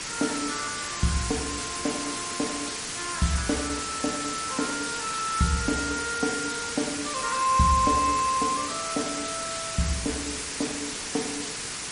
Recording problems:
lossy compression; MP3, log-spectral distance 16 dB, nothing above 10.4 kHz
hiss; slope 0 dB per octave, SNR 3 dB

